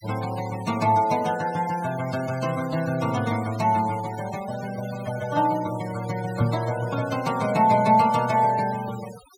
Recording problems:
noise reduction artefacts; signal-to-artefact ratio 16 dB
microphone bump; at 6.5 s; peak +3 dB vs average level

